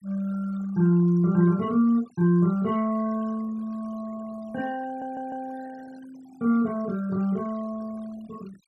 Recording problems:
denoising artefacts; signal-to-artefact ratio 25 dB
audio stuttering; at 5 s

